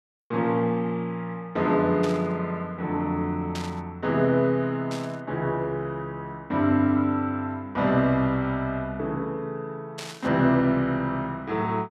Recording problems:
static burst; 4 times, first at 2 s; peak -7 dB vs average level

